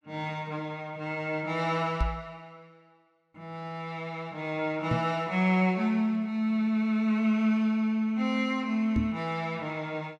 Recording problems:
knock on the microphone; at 2 s, at 5 s and at 9 s; peak +3 dB vs average level

